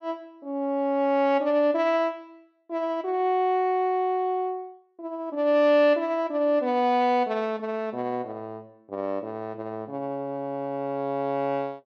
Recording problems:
none

